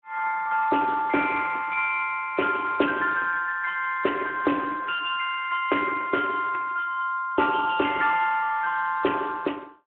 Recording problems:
phone line; 240 Hz to 3.1 kHz, Speex

